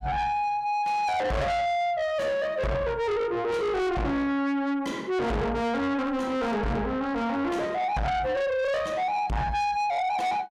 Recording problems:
distorted audio; soft clipping, signal-to-distortion ratio 6 dB

